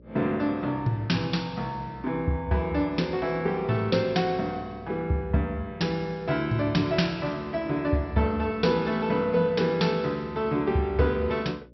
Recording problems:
treble missing; nothing above 5.7 kHz
electrical hum; 60 Hz, harmonics up to 600 Hz, SNR 24 dB

